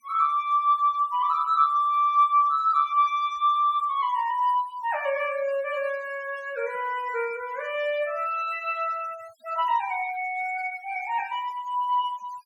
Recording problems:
denoising artefacts; signal-to-artefact ratio 24 dB

